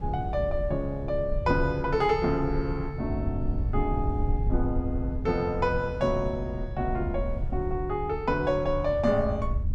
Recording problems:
rumble; below 80 Hz, SNR 6 dB
wind noise; below 130 Hz, SNR 13 dB

